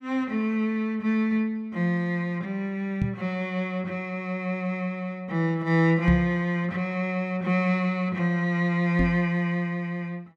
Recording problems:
microphone bump; at 3 s, at 6 s and at 9 s; peak +3 dB vs average level

